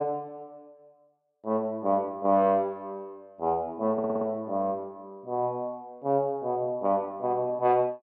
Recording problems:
stutter; at 4 s

